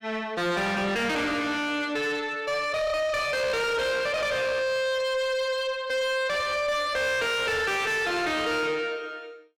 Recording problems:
distorted audio; soft clipping, signal-to-distortion ratio 6 dB

